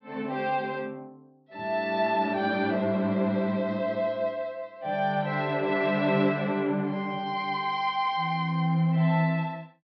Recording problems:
treble cut off; nothing above 5.5 kHz

